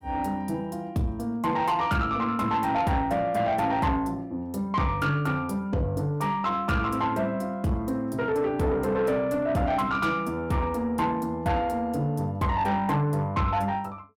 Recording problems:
distorted audio; soft clipping, signal-to-distortion ratio 11 dB

